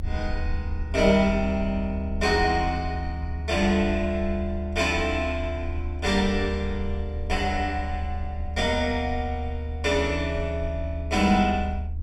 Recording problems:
rumble; below 76 Hz, strongest tone 76 Hz, SNR 6 dB

